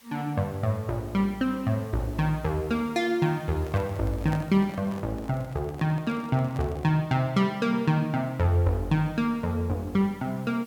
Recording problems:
hiss; slope 0 dB per octave, SNR 27 dB
handling noise; from 3.5 to 7 s; peak -5 dB vs average level

